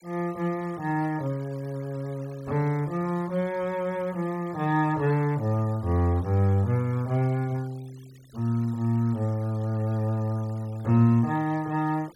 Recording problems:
noise reduction artefacts; signal-to-artefact ratio 26 dB

